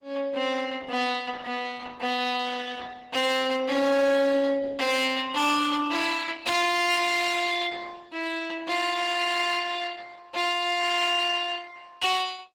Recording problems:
lossy compression; Opus, log-spectral distance 5 dB, nothing above 20.1 kHz
distorted audio; hard clipping, uneven, signal-to-distortion ratio 11 dB

